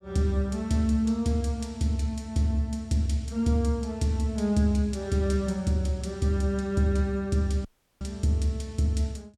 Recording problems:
audio cutting out; at 7.5 s

